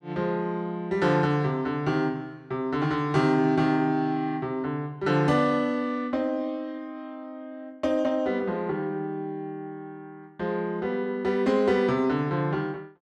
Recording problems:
none

